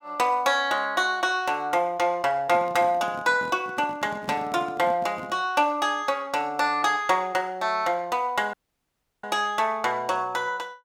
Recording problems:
microphone handling noise; from 2.5 to 5.5 s; peak -9 dB vs average level
dropout; at 8.5 s for 0.5 s

